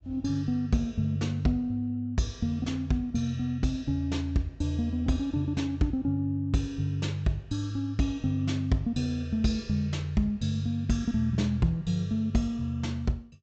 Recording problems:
low-pass filter; nothing above 8 kHz

